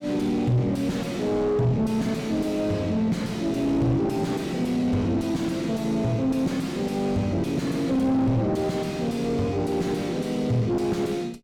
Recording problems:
distorted audio; soft clipping, signal-to-distortion ratio 6 dB

